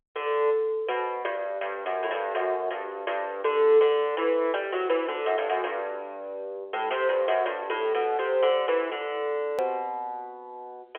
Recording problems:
telephone audio; 320 Hz to 3.3 kHz, G.711
edit click; at 9.5 s

